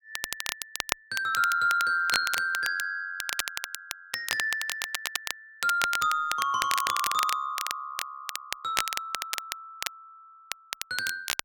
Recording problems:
crackling; vinyl, SNR 5 dB

